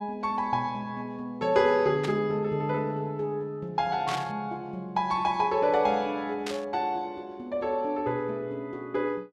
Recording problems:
static burst; at 2 s, at 4 s and at 6.5 s; peak -2 dB vs average level

